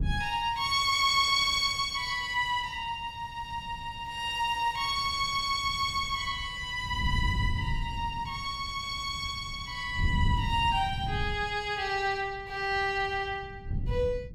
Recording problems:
wind noise; below 120 Hz, SNR 8 dB

